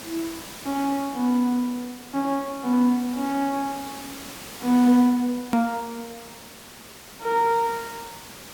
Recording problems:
background hiss; slope -2 dB per octave, SNR 16 dB
click at an edit; at 5.5 s

